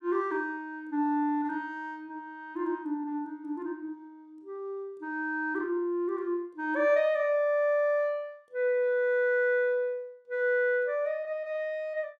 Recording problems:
none

